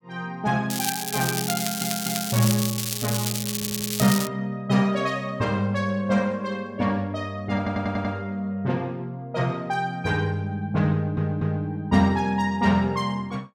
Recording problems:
crackle; from 0.5 to 4.5 s; loose cable, SNR 2 dB
stutter; 4 times, first at 1.5 s

